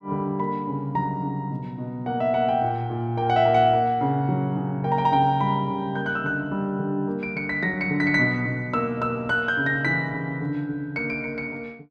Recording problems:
none

